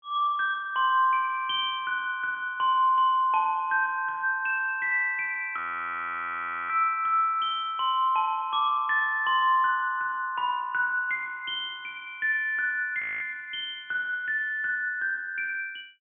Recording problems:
low-pass filter; nothing above 3.4 kHz
frozen audio; at 5.5 s for 1 s and at 13 s

